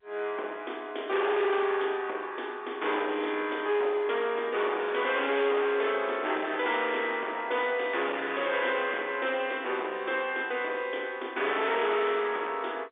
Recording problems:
phone line; 280 Hz to 3.7 kHz, G.711
distorted audio; hard clipping, uneven, signal-to-distortion ratio 9 dB

